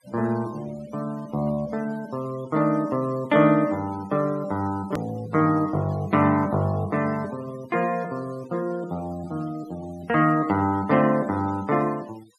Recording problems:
noise reduction artefacts; signal-to-artefact ratio 23 dB
click at an edit; at 5 s

